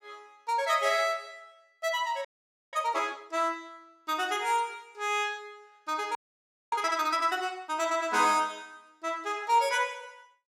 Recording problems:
frozen audio; at 2.5 s and at 6 s for 0.5 s

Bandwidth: 16.5 kHz